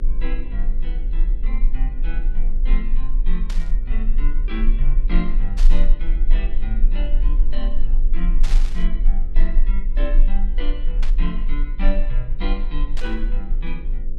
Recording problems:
hum; 50 Hz, harmonics up to 550 Hz, SNR 5 dB
rumble; below 32 Hz, strongest tone 20 Hz, SNR -10 dB
static burst; 5 times, first at 3.5 s; peak +2 dB vs average level

